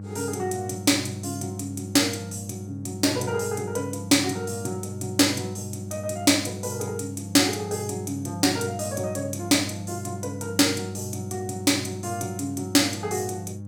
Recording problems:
electrical hum; 50 Hz, harmonics up to 500 Hz, SNR 11 dB

